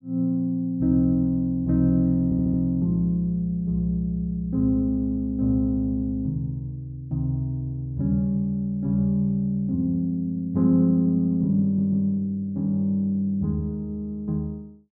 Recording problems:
stutter; at 2.5 s and at 12 s

